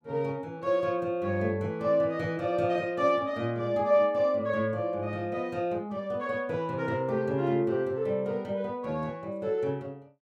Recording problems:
none

